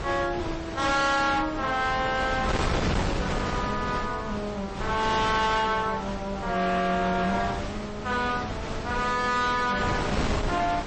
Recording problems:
codec artefacts; MP3, then AAC, log-spectral distance 3 dB, nothing above 8.2 kHz
distortion; hard clipping, signal-to-distortion ratio 10 dB
wind on the microphone; below 1.1 kHz, SNR 5 dB

